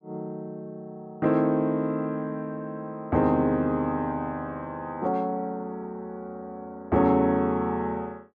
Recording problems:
none

